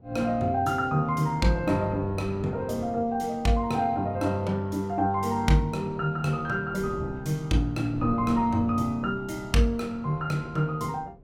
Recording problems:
wind noise; below 270 Hz, SNR 18 dB

